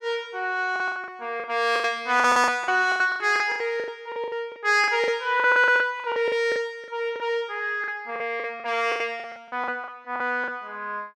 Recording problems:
lost packets; 18% of the sound replaced, filled with the last packet

